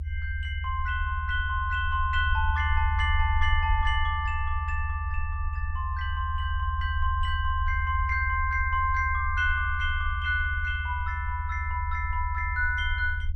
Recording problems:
low-frequency rumble; below 78 Hz, SNR 2 dB

